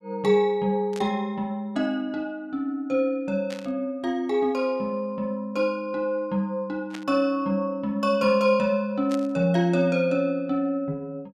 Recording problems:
burst of static; 4 times, first at 1 s; peak -10 dB vs average level

